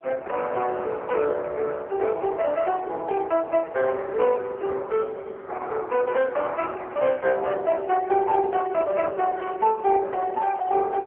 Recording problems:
phone line; 340 Hz to 3.2 kHz, AMR-NB

